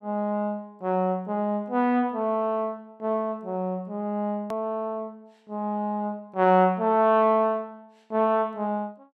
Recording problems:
hard cut with a click; at 4.5 s

